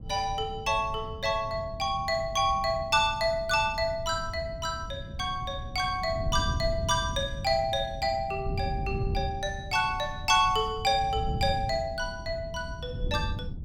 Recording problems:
wind on the microphone; below 140 Hz, SNR 9 dB

